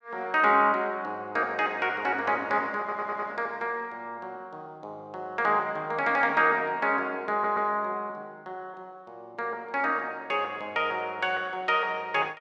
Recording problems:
audio stuttering; at 3 s and at 7.5 s

